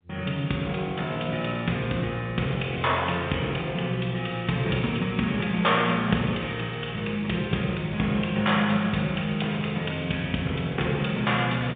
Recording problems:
telephone audio; 130 Hz to 3.7 kHz, G.711

